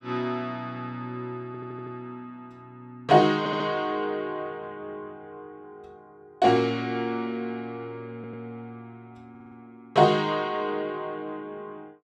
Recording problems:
audio stuttering; 4 times, first at 1.5 s

